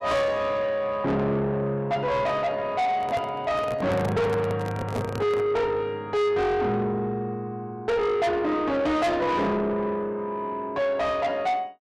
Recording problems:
distortion; soft clipping, signal-to-distortion ratio 7 dB
handling noise; from 3 to 5.5 s; peak +1 dB vs average level

